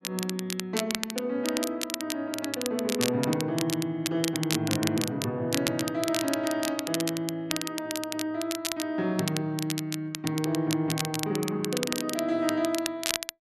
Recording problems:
crackle; vinyl, SNR 4 dB

